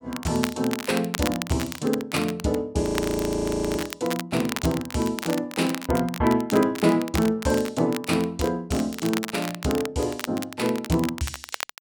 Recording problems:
crackling; vinyl, SNR 10 dB
frozen audio; at 3 s for 1 s

